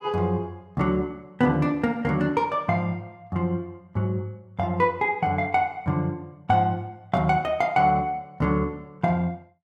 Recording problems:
none

